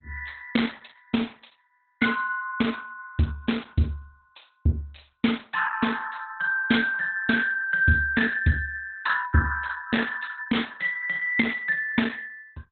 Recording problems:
codec artefacts; Opus, log-spectral distance 6 dB, nothing above 4 kHz

